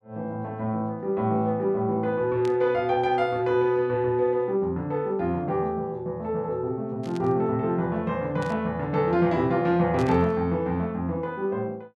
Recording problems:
burst of static; 4 times, first at 2.5 s; peak -12 dB vs average level

